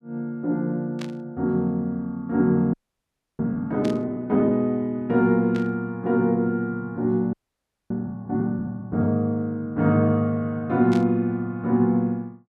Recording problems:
burst of static; 4 times, first at 1 s; peak -10 dB vs average level
audio freezing; at 2.5 s for 0.5 s and at 7.5 s for 0.5 s

